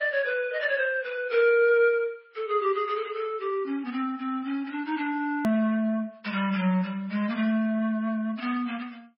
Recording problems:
lossy compression; MP3, log-spectral distance 2 dB, nothing above 19.5 kHz
click at an edit; at 5.5 s

